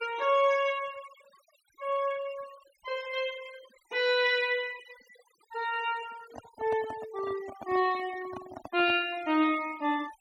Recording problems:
denoising artefacts; signal-to-artefact ratio 20 dB
microphone handling noise; from 6 to 9 s; peak -8 dB vs average level

